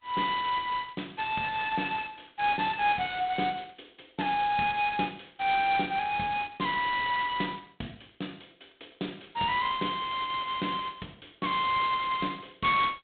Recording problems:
telephone audio; 110 Hz to 3.9 kHz, G.726

